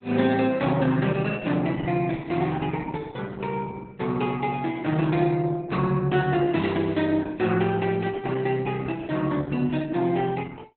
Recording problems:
lossy codec; Opus, log-spectral distance 4 dB, nothing above 4 kHz

